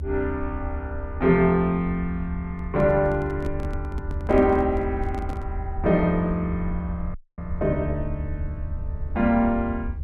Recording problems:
low-frequency rumble; below 78 Hz, SNR 8 dB
handling noise; from 2.5 to 5.5 s; peak -7 dB vs average level
dropout; at 7 s

